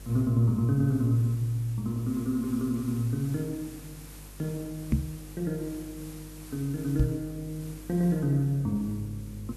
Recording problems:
hum; 50 Hz, harmonics up to 550 Hz, SNR 19 dB
background hiss; SNR 20 dB
knock on the microphone; at 5 s and at 7 s; peak +7 dB vs average level

